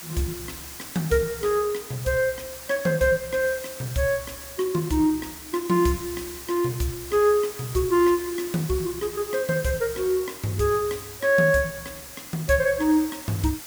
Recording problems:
background hiss; slope 0 dB per octave, SNR 13 dB

